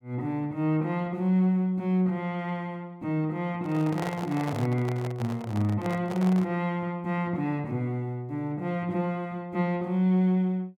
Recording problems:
handling noise; from 3.5 to 6.5 s; peak -3 dB vs average level

